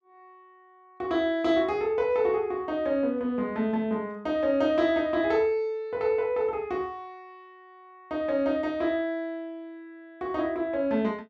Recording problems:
none

